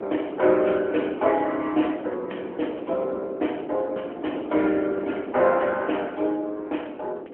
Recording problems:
telephone audio; 260 Hz to 3.2 kHz, AMR-NB
wind noise; below 550 Hz, SNR 10 dB

